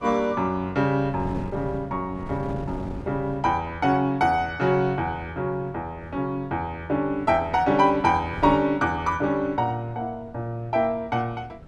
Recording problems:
wind on the microphone; below 290 Hz, SNR 16 dB

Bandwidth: 12 kHz